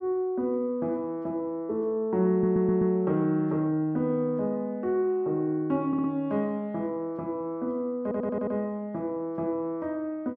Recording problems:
stutter; at 2.5 s, at 6 s and at 8 s

